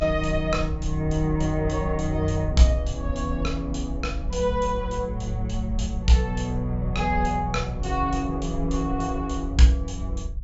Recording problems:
low-pass filter; nothing above 8 kHz
rumble; below 64 Hz, SNR 7 dB

